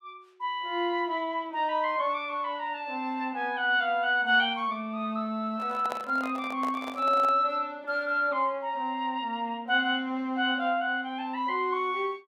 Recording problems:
handling noise; from 5.5 to 7.5 s; peak -3 dB vs average level

